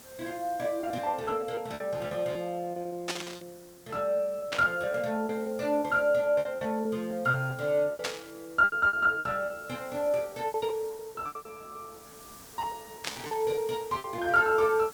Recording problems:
hiss; SNR 22 dB
lost packets; 15% of the sound replaced, filled with repeated pitch periods
burst of static; 4 times, first at 3 s; peak +2 dB vs average level

